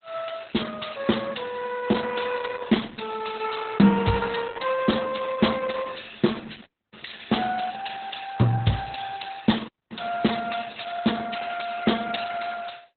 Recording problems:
lossy compression; Speex, then Opus, log-spectral distance 9 dB, nothing above 4 kHz
dropout; at 6.5 s and at 9.5 s

